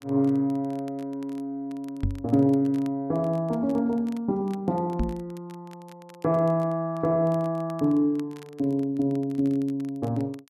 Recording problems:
crackling; vinyl, SNR 29 dB
microphone thump; at 2 s and at 5 s; peak +3 dB vs average level

